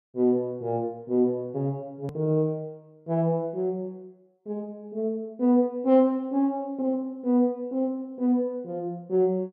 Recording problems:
hard cut with a click; at 2 s

